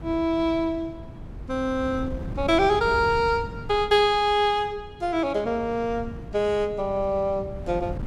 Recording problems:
wind on the microphone; below 190 Hz, SNR 14 dB

